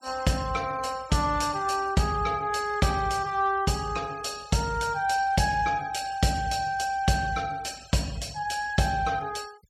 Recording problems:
denoising artefacts; signal-to-artefact ratio 22 dB

